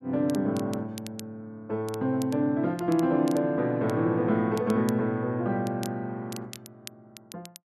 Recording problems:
crackling; vinyl, SNR 20 dB

